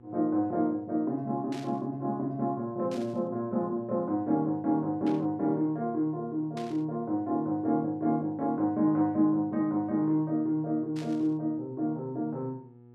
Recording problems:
mains hum; 60 Hz, harmonics up to 960 Hz, SNR 24 dB
burst of static; 5 times, first at 1.5 s; peak -12 dB vs average level

